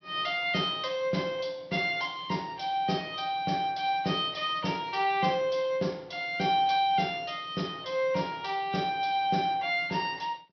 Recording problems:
treble cut off; nothing above 5.9 kHz

